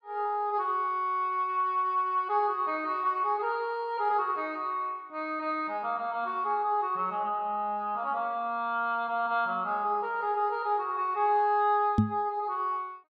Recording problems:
microphone bump; at 12 s; peak +9 dB vs average level

